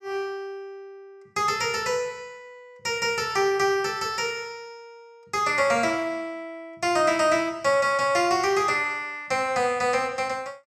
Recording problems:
none

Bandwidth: 14 kHz